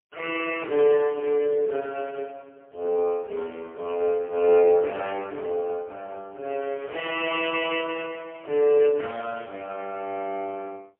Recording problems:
telephone audio; 300 Hz to 3.2 kHz, AMR-NB, then MP3

